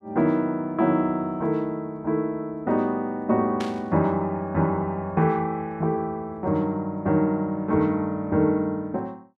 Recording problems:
burst of static; at 3.5 s; peak -6 dB vs average level

